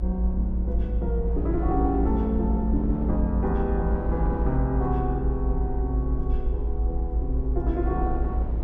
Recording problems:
low-frequency rumble; below 58 Hz, strongest tone 56 Hz, SNR -1 dB
wind on the microphone; below 350 Hz, SNR 9 dB

